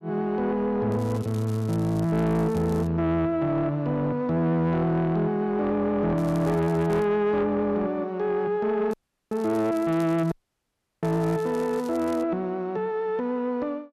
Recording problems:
distortion; soft clipping, signal-to-distortion ratio 11 dB
crackling; from 1 to 3 s, at 6 s and from 9 to 12 s; loose cable, SNR 24 dB
dropout; at 9 s and at 10 s for 0.5 s

